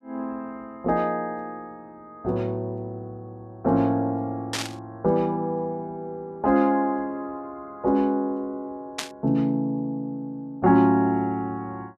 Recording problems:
burst of static; at 4.5 s and at 9 s; peak +1 dB vs average level

